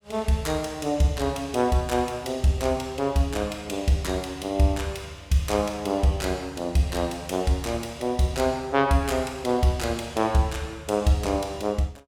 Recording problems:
none

